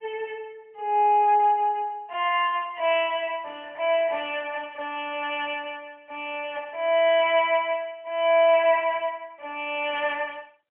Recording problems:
phone line; 370 Hz to 3.1 kHz, AMR-NB, then MP3

